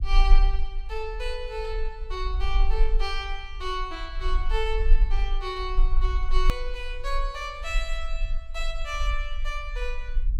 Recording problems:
low-frequency rumble; below 38 Hz, strongest tone 20 Hz, SNR -3 dB
click at an edit; at 6.5 s

